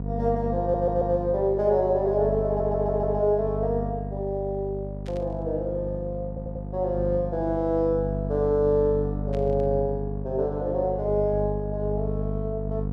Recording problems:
hum; 50 Hz, harmonics up to 700 Hz, SNR 6 dB
audio stuttering; at 0.5 s, at 2.5 s and at 6.5 s
burst of static; at 5 s and at 9.5 s; peak -15 dB vs average level

